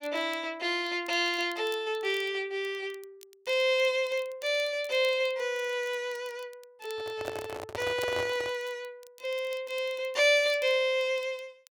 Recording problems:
crackling; vinyl, SNR 25 dB
handling noise; from 7 to 8.5 s; peak -2 dB vs average level

